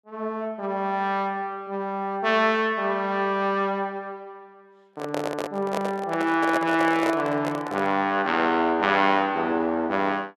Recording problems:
microphone handling noise; from 5 to 8 s; peak 0 dB vs average level

